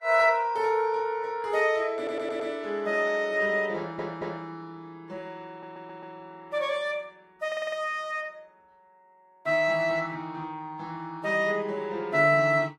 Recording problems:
lossy codec; Vorbis, log-spectral distance 2 dB, nothing above 14.7 kHz
stutter; 4 times, first at 2 s

